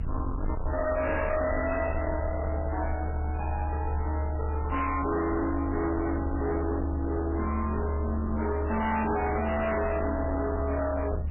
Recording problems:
lossy compression; MP3, log-spectral distance 4 dB, nothing above 2.7 kHz
distorted audio; hard clipping, signal-to-distortion ratio 7 dB
hiss; SNR 24 dB
low-frequency rumble; below 210 Hz, strongest tone 74 Hz, SNR 2 dB

